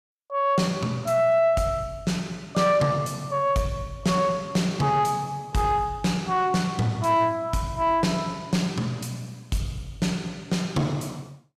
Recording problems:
distorted audio; soft clipping, signal-to-distortion ratio 11 dB

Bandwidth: 14.5 kHz